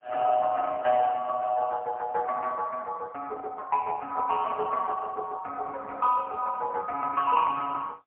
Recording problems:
phone line; 300 Hz to 2.4 kHz, AMR-NB, then MP3

